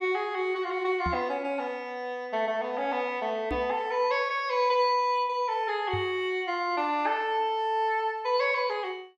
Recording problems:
microphone thump; at 1 s, at 3.5 s and at 6 s; peak -2 dB vs average level

